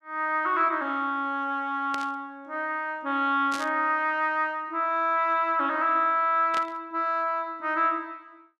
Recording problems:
burst of static; at 2 s, at 3.5 s and at 6.5 s; peak -5 dB vs average level

